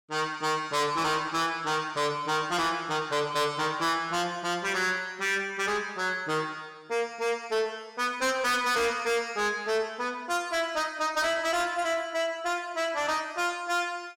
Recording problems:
distortion; soft clipping, signal-to-distortion ratio 8 dB

